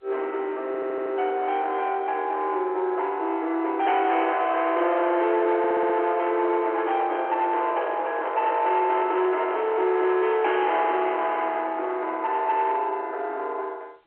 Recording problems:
telephone audio; 300 Hz to 3.2 kHz, G.711
distortion; soft clipping, signal-to-distortion ratio 11 dB
stutter; at 0.5 s and at 5.5 s
microphone handling noise; from 7 to 9.5 s; peak -3 dB vs average level

